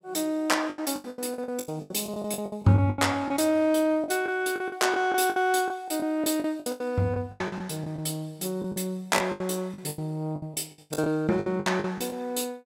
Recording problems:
packet loss; 17% of the sound replaced, filled with the last packet

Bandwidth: 16 kHz